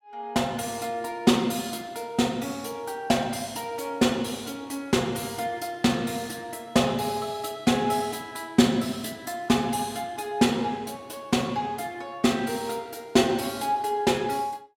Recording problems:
none

